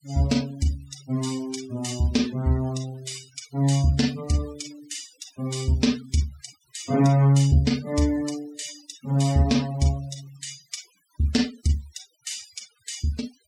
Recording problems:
noise reduction artefacts; signal-to-artefact ratio 18 dB

